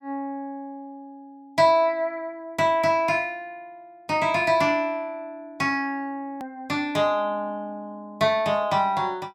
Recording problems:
edit click; at 6.5 s

